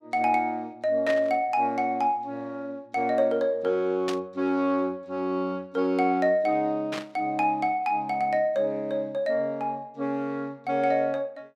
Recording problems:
static burst; at 1 s, at 4 s and at 7 s; peak -3 dB vs average level

